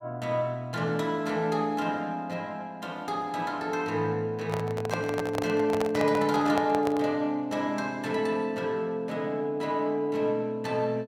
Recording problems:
handling noise; from 4.5 to 7 s; peak +1 dB vs average level

